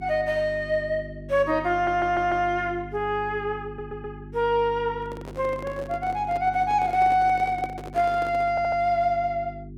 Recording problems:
mains hum; 50 Hz, harmonics up to 400 Hz, SNR 16 dB
audio stuttering; at 1.5 s, at 3.5 s and at 8.5 s
microphone handling noise; from 5 to 9 s; peak -7 dB vs average level

